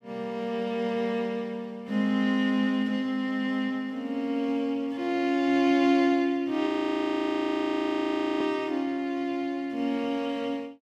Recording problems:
audio freezing; at 6.5 s for 1.5 s

